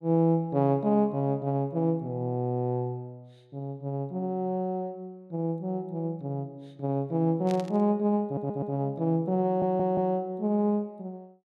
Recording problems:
burst of static; at 7.5 s; peak -10 dB vs average level
audio stuttering; at 8.5 s and at 9.5 s

